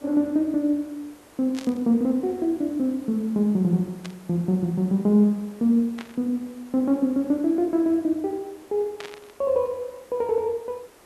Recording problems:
hiss; slope -5 dB per octave, SNR 26 dB
burst of static; 4 times, first at 1.5 s; peak -9 dB vs average level

